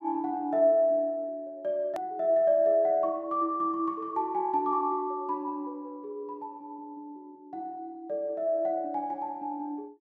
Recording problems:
click at an edit; at 2 s

